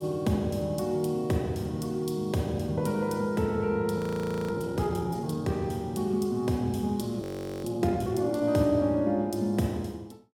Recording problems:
frozen audio; at 4 s for 0.5 s and at 7 s

